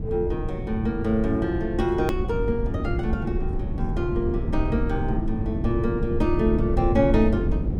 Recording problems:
low-frequency rumble; below 140 Hz, SNR 3 dB
hard cut with a click; at 2 s

